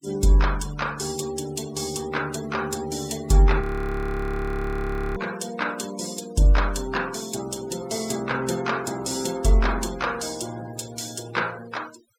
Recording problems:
noise reduction artefacts; signal-to-artefact ratio 16 dB
frozen audio; at 3.5 s for 1.5 s

